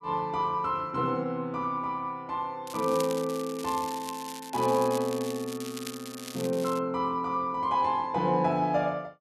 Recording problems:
crackling; from 2.5 to 7 s; loose cable, SNR 13 dB

